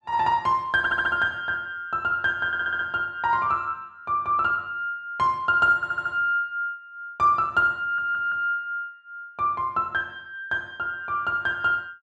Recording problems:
audio stuttering; 4 times, first at 1 s

